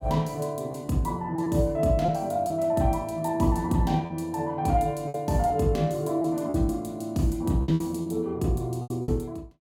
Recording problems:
packet loss; 7% of the sound replaced, filled with repeated pitch periods

